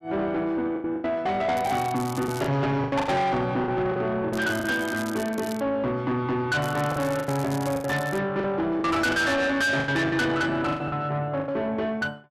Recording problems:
distorted audio; soft clipping, signal-to-distortion ratio 8 dB
packet loss; 10% of the sound replaced, filled with the last packet
crackle; at 1.5 s, from 4.5 to 5.5 s and from 6.5 to 8 s; loose cable, SNR 16 dB

